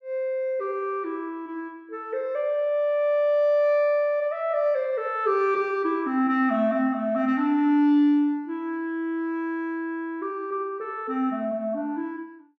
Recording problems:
none

